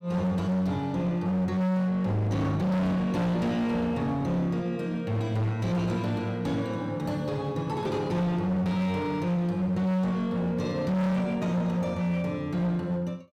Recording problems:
distorted audio; hard clipping, uneven, signal-to-distortion ratio 6 dB

